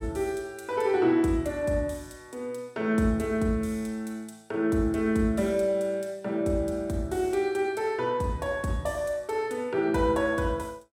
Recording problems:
none

